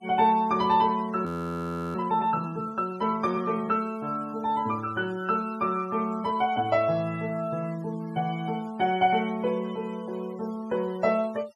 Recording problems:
noise reduction artefacts; signal-to-artefact ratio 23 dB
frozen audio; at 1.5 s for 0.5 s

